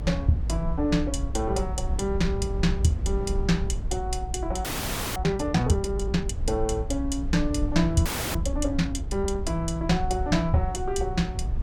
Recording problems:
rumble; below 74 Hz, SNR 4 dB
frozen audio; at 4.5 s for 0.5 s and at 8 s

